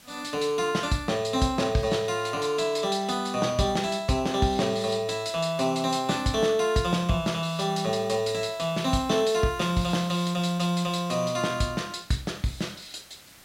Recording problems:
background hiss; slope 0 dB per octave, SNR 24 dB

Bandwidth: 16 kHz